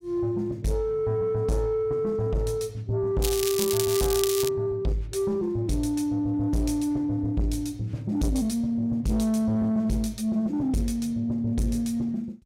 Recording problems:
distorted audio; soft clipping, signal-to-distortion ratio 10 dB
crackling; from 3 to 4.5 s; loose cable, SNR 4 dB

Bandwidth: 16 kHz